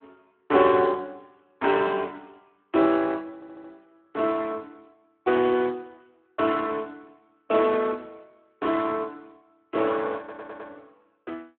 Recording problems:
telephone audio; 260 Hz to 3.3 kHz, Speex
stutter; at 3.5 s and at 10 s

